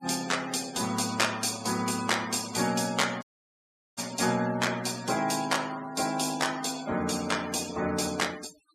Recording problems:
noise reduction artefacts; signal-to-artefact ratio 15 dB
audio cutting out; at 3 s for 0.5 s

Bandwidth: 14.5 kHz